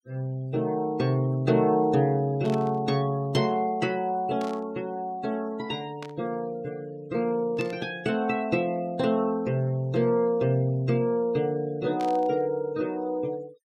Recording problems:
denoising artefacts; signal-to-artefact ratio 26 dB
static burst; 5 times, first at 2.5 s; peak -11 dB vs average level

